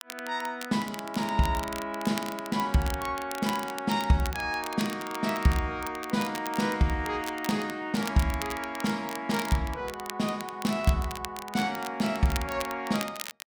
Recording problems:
crackle; vinyl, SNR 12 dB

